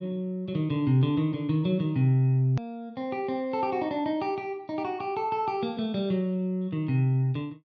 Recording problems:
treble cut off; nothing above 6.5 kHz
click at an edit; at 2.5 s

